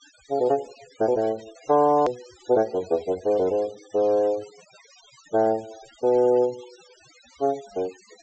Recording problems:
low-pass filter; nothing above 8 kHz
noise reduction artefacts; signal-to-artefact ratio 24 dB
hard cut with a click; at 2 s

